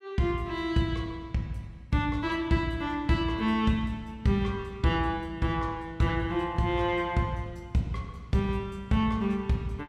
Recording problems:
none

